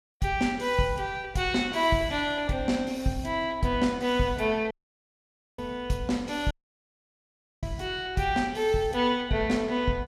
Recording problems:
audio cutting out; at 4.5 s for 1 s and at 6.5 s for 1 s

